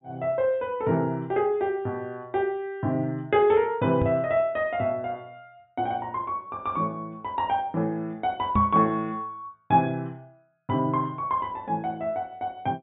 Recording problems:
treble cut off; nothing above 4 kHz
knock on the microphone; at 4 s and at 8.5 s; peak +5 dB vs average level

